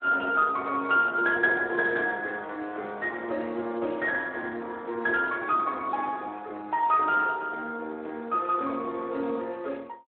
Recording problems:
phone line; 240 Hz to 3.3 kHz, Speex

